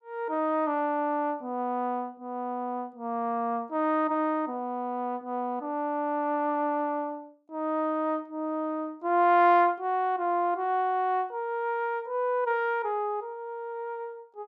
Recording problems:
none

